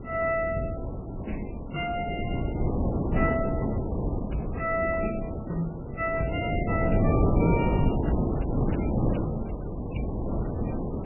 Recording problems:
lossy compression; MP3, log-spectral distance 4 dB, nothing above 2.7 kHz
wind noise; below 380 Hz, SNR -3 dB
crackle; at 2.5 s and from 8.5 to 11 s; loose cable, SNR 24 dB

